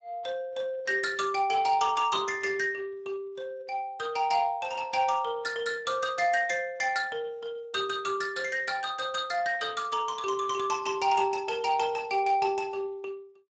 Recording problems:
lossy codec; Speex, log-spectral distance 4 dB, nothing above 7.3 kHz

